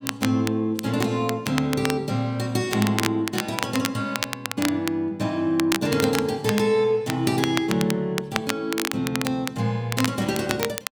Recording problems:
crackling; vinyl, SNR 6 dB

